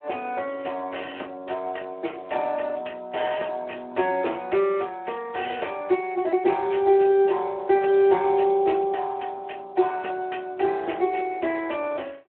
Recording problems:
telephone audio; 280 Hz to 3.1 kHz, Speex

